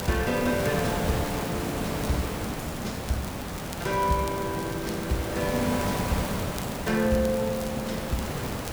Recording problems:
hiss; slope -5 dB per octave, SNR 1 dB
crackling; vinyl, SNR 15 dB

